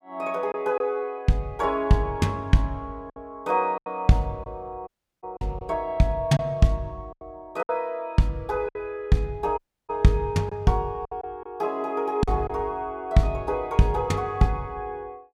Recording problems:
lost packets; 5% of the sound replaced, filled with silence
dropout; at 5 s and at 9.5 s

